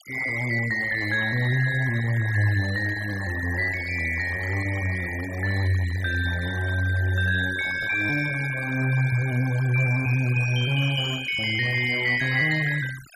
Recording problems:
denoising artefacts; signal-to-artefact ratio 16 dB

